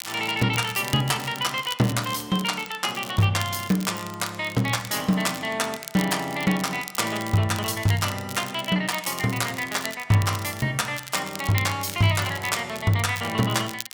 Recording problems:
crackling; vinyl, SNR 13 dB

